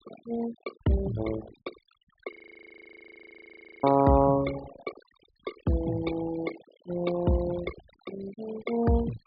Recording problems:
treble cut off; nothing above 4.8 kHz
noise reduction artefacts; signal-to-artefact ratio 15 dB
frozen audio; at 2.5 s for 1.5 s

